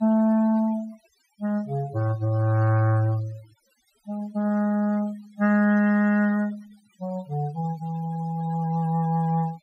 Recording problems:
noise reduction artefacts; signal-to-artefact ratio 24 dB

